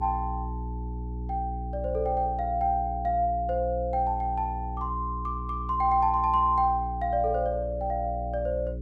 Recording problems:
hum; 60 Hz, harmonics up to 420 Hz, SNR 8 dB

